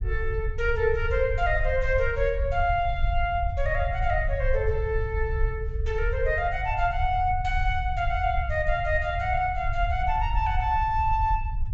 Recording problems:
treble missing; nothing above 8 kHz
low-frequency rumble; below 74 Hz, SNR 4 dB

